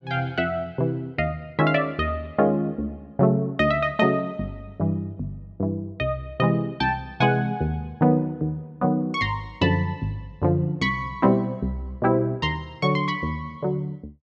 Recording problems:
none

